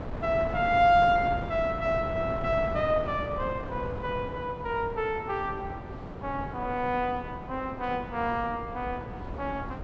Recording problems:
treble cut off; nothing above 7.8 kHz
wind on the microphone; below 550 Hz, SNR 9 dB

